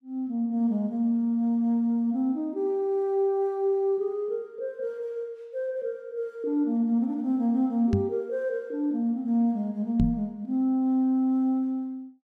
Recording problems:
microphone thump; at 8 s and at 10 s; peak +6 dB vs average level

